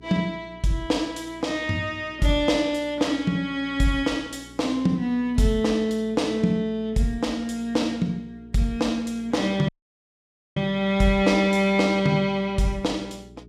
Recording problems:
hum; 60 Hz, harmonics up to 420 Hz, SNR 23 dB
dropout; at 9.5 s for 1 s

